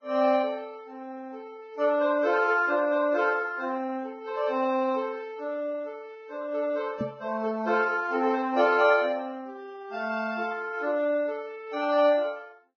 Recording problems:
lossy compression; Vorbis, log-spectral distance 2 dB, nothing above 5.3 kHz
microphone thump; at 7 s; peak -2 dB vs average level

